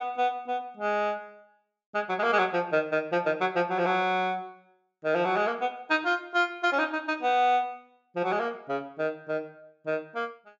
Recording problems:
treble missing; nothing above 7.6 kHz

